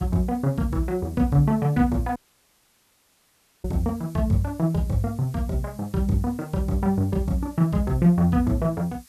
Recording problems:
hiss; slope +3 dB per octave, SNR 27 dB
dropout; at 2 s for 1.5 s

